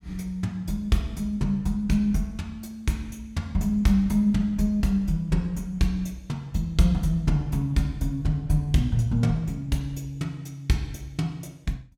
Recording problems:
none

